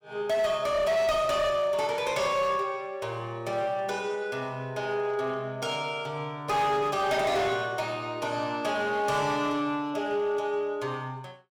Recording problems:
distortion; hard clipping, uneven, signal-to-distortion ratio 11 dB

